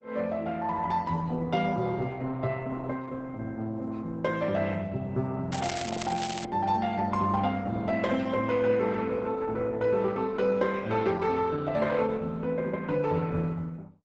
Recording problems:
lossy codec; Opus, log-spectral distance 4 dB, nothing above 8 kHz
crackling; at 5.5 s; loose cable, SNR 9 dB

